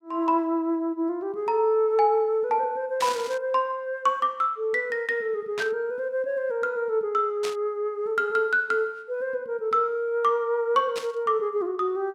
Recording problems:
static burst; 4 times, first at 3 s; peak -3 dB vs average level

